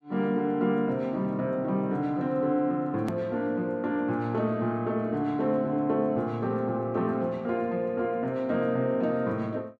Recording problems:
edit click; at 3 s

